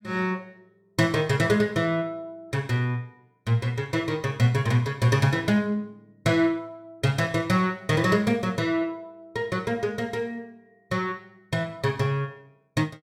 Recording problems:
none

